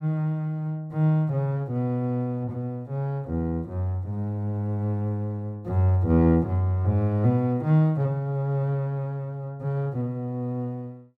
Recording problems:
none

